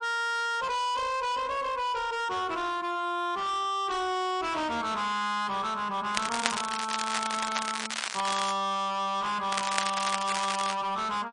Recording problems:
lossy compression; MP3, log-spectral distance 5 dB, nothing above 8.5 kHz
distortion; hard clipping, signal-to-distortion ratio 7 dB
crackling; from 6 to 8.5 s and from 9.5 to 11 s; loose cable, SNR 3 dB

